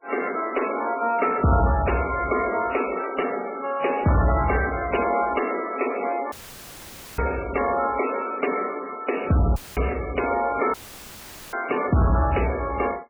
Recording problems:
codec artefacts; MP3, log-spectral distance 6 dB
distorted audio; soft clipping, signal-to-distortion ratio 12 dB
audio cutting out; at 6.5 s for 1 s, at 9.5 s and at 11 s for 1 s; filled with static

